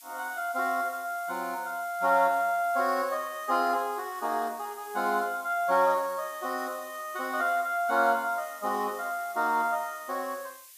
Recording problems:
hiss; slope +6 dB per octave, SNR 19 dB

